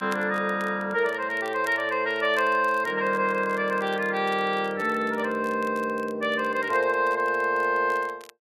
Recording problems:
crackling; vinyl, SNR 25 dB

